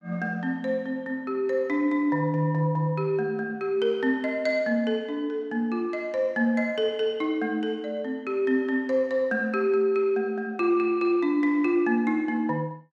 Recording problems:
none

